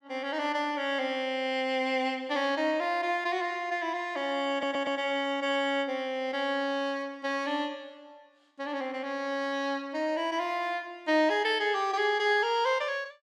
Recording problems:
stutter; at 4.5 s

